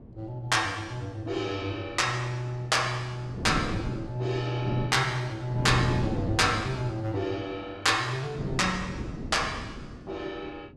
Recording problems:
wind noise; below 320 Hz, SNR 7 dB

